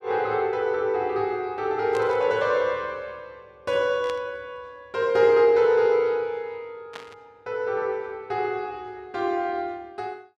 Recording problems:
burst of static; at 2 s, at 4 s and at 7 s; peak -10 dB vs average level

